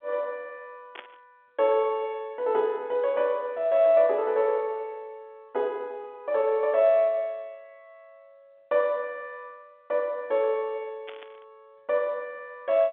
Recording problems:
telephone audio; 280 Hz to 3.6 kHz, G.711
static burst; at 1 s and at 11 s; peak -9 dB vs average level

